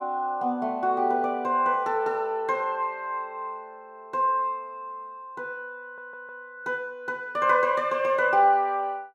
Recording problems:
stutter; at 6 s

